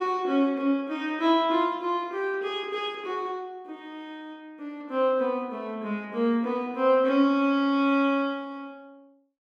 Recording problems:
none

